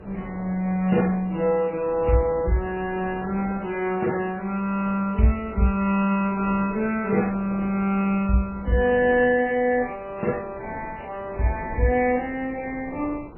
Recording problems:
lossy compression; MP3, then MP2, log-spectral distance 3 dB, nothing above 2.6 kHz
wind noise; below 650 Hz, SNR 18 dB

